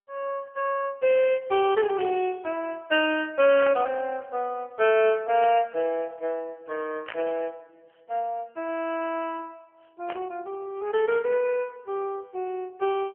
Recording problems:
phone line; 340 Hz to 3.3 kHz, AMR-NB
static burst; 5 times, first at 2 s; peak -5 dB vs average level

